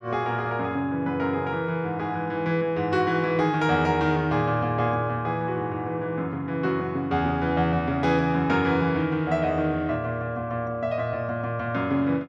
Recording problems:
none

